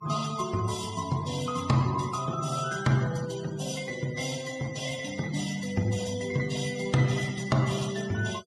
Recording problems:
denoising artefacts; signal-to-artefact ratio 15 dB

